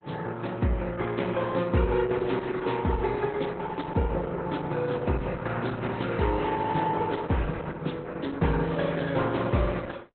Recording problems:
lossy compression; Opus, log-spectral distance 4 dB, nothing above 4 kHz

